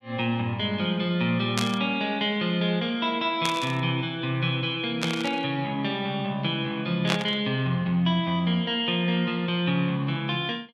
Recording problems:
static burst; 4 times, first at 1.5 s; peak +3 dB vs average level

